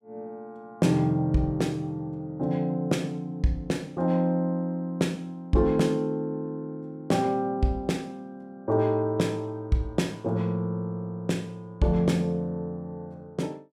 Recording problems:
none

